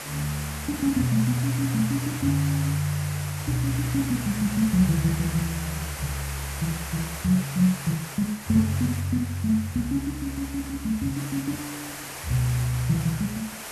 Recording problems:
background hiss; SNR 9 dB

